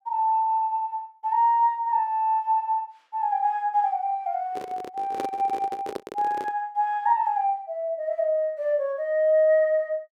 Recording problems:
handling noise; from 4.5 to 6.5 s; peak -3 dB vs average level

